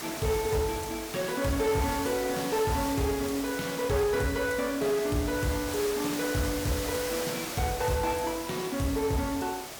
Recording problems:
distorted audio; soft clipping, signal-to-distortion ratio 12 dB
background hiss; slope -2 dB per octave, SNR 7 dB

